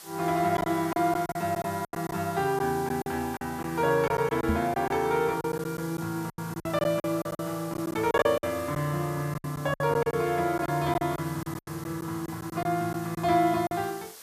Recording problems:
hiss; SNR 17 dB
packet loss; 12% of the sound replaced, filled with silence
knock on the microphone; at 4.5 s; peak +4 dB vs average level

